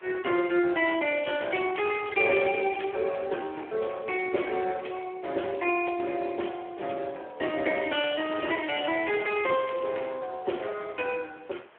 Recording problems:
phone line; 280 Hz to 3.3 kHz, Speex
background hiss; SNR 27 dB
crackle; from 1 to 3 s and from 8 to 10 s; loose cable, SNR 15 dB

